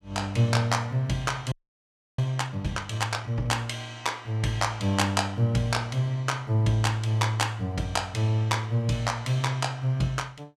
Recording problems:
frozen audio; at 1.5 s for 0.5 s

